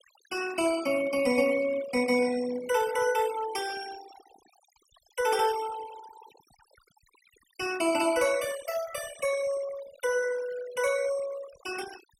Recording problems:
denoising artefacts; signal-to-artefact ratio 15 dB

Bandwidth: 16 kHz